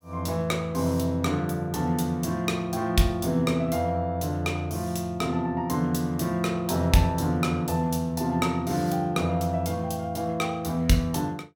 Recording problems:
none

